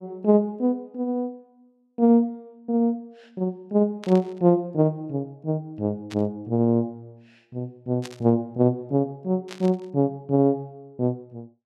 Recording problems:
static burst; 4 times, first at 4 s; peak -10 dB vs average level

